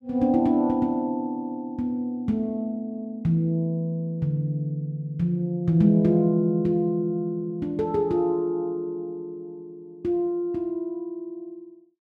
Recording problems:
none

